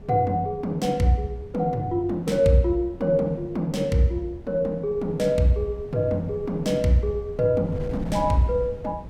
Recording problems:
wind noise; below 190 Hz, SNR 16 dB

